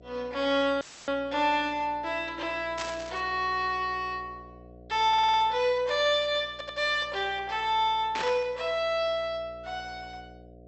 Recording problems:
treble cut off; nothing above 8 kHz
hum; 60 Hz, harmonics up to 720 Hz, SNR 23 dB
audio cutting out; at 1 s; filled with static
burst of static; at 3 s and at 8 s; peak -2 dB vs average level
audio stuttering; at 5 s and at 6.5 s

